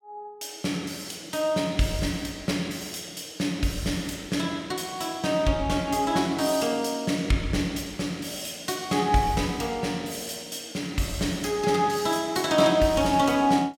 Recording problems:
none

